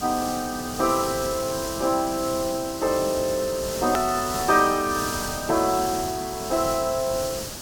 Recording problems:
background hiss; SNR 7 dB
hard cut with a click; at 4 s

